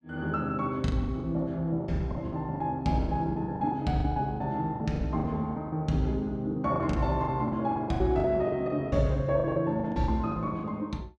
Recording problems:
packet loss; 15% of the sound replaced, filled with the last packet

